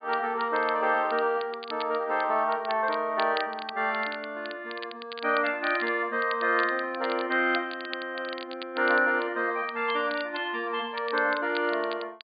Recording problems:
low-pass filter; nothing above 4.7 kHz
crackle; vinyl, SNR 16 dB

